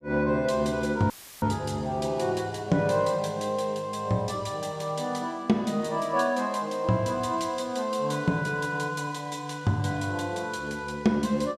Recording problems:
audio cutting out; at 1 s; filled with static

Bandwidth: 14.5 kHz